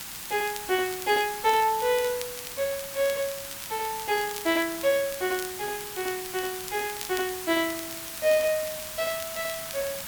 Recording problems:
background hiss; slope +1 dB per octave, SNR 7 dB
crackling; vinyl, SNR 16 dB

